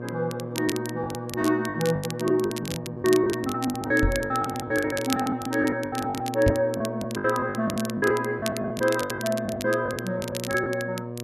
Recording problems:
electrical hum; 60 Hz, harmonics up to 1.2 kHz, SNR 9 dB
crackle; vinyl, SNR 12 dB
packet loss; 17% of the sound replaced, filled with the last packet
microphone thump; at 4 s and at 6.5 s; peak +5 dB vs average level

